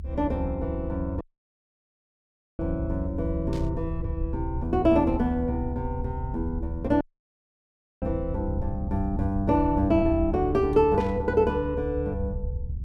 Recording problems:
low-frequency rumble; below 78 Hz, SNR 7 dB
audio cutting out; at 1 s for 1.5 s and at 7 s for 1 s
static burst; at 3.5 s and at 11 s; peak -12 dB vs average level

